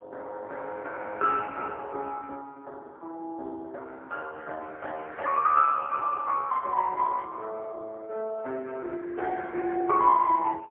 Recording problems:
phone line; 300 Hz to 2.1 kHz, AMR-NB, then MP3

